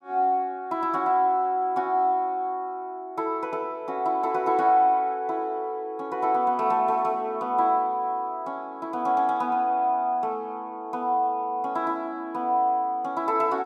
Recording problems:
none

